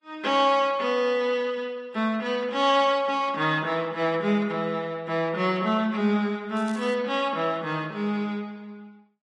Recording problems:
lossy compression; Vorbis, log-spectral distance 2 dB
crackling; at 6.5 s; loose cable, SNR 25 dB

